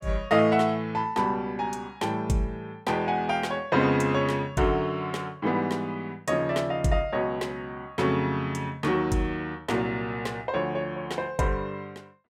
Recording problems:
none

